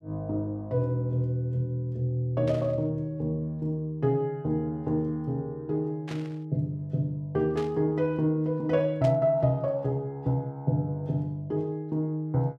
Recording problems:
static burst; 4 times, first at 2.5 s; peak -10 dB vs average level

